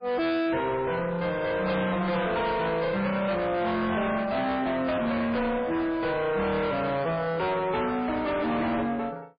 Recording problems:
lossy codec; MP3, log-spectral distance 3 dB, nothing above 4.6 kHz
distortion; hard clipping, uneven, signal-to-distortion ratio 5 dB

